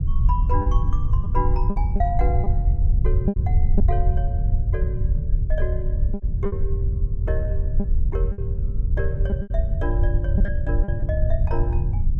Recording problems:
rumble; below 80 Hz, SNR -9 dB
lost packets; 6% of the sound replaced, filled with repeated pitch periods

